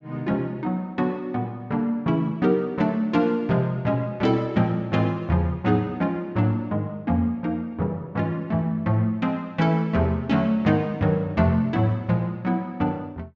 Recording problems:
low-pass filter; nothing above 8 kHz

